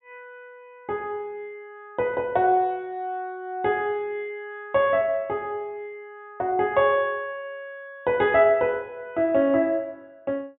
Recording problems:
treble cut off; nothing above 4 kHz

